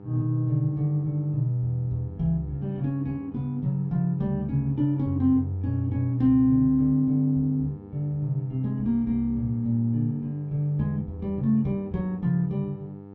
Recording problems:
mains hum; 50 Hz, harmonics up to 1.3 kHz, SNR 18 dB

